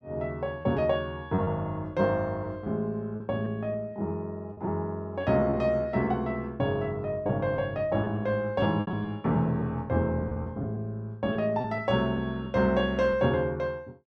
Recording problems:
lost packets; 6% of the sound replaced, filled with repeated pitch periods

